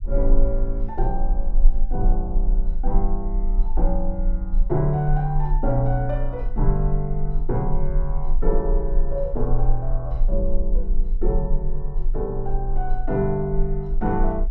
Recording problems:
low-frequency rumble; below 34 Hz, strongest tone 18 Hz, SNR 0 dB

